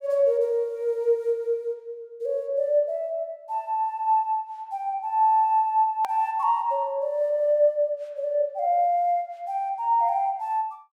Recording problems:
edit click; at 6 s

